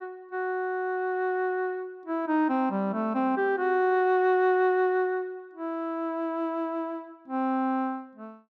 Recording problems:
none

